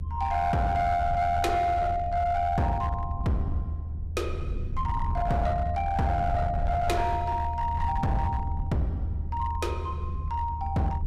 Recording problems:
distorted audio; hard clipping, signal-to-distortion ratio 12 dB
rumble; below 84 Hz, SNR 5 dB

